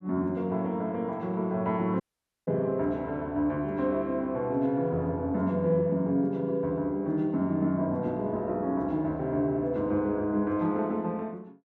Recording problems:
audio cutting out; at 2 s

